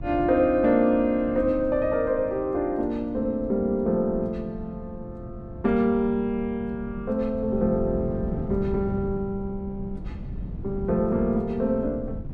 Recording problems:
wind on the microphone; below 180 Hz, SNR 12 dB

